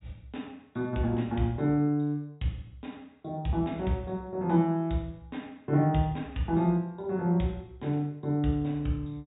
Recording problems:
low-pass filter; nothing above 4 kHz

